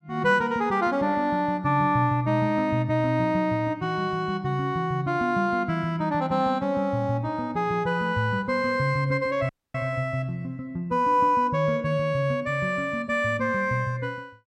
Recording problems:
audio cutting out; at 9.5 s

